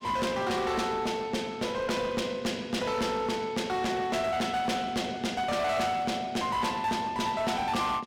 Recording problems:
distortion; hard clipping, uneven, signal-to-distortion ratio 7 dB

